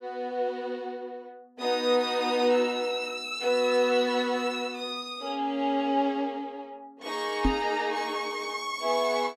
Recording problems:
microphone bump; at 7.5 s; peak +6 dB vs average level

